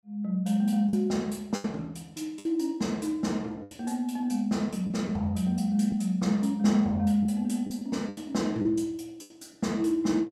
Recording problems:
lost packets; 6% of the sound replaced, filled with the last packet

